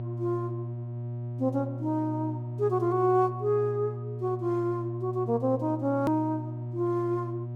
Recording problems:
electrical hum; 60 Hz, harmonics up to 720 Hz, SNR 7 dB
edit click; at 6 s

